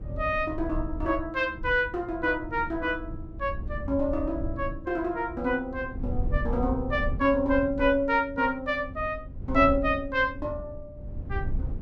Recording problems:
rumble; below 88 Hz, SNR 9 dB

